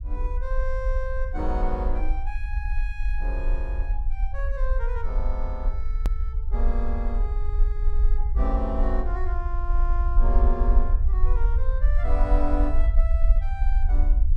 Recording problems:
rumble; below 48 Hz, SNR -8 dB
click at an edit; at 6 s

